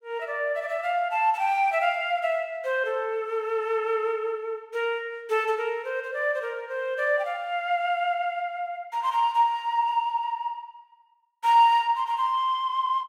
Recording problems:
none

